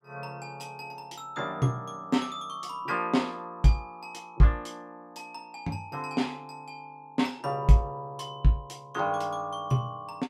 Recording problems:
none

